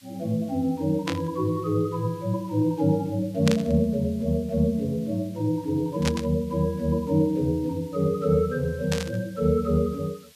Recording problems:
hiss; slope +4 dB per octave, SNR 27 dB
static burst; 4 times, first at 1 s; peak +1 dB vs average level

